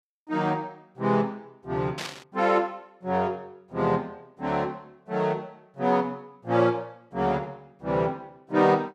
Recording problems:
burst of static; at 2 s; peak -3 dB vs average level

